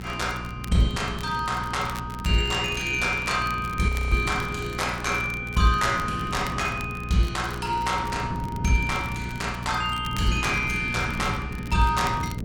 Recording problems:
hum; 60 Hz, harmonics up to 720 Hz, SNR 11 dB
wind noise; below 240 Hz, SNR 12 dB
crackling; vinyl, SNR 20 dB
audio freezing; at 4 s

